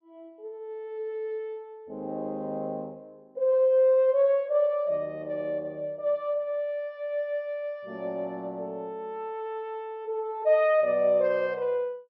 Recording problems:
none

